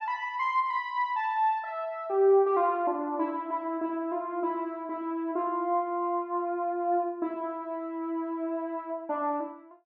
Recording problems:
none

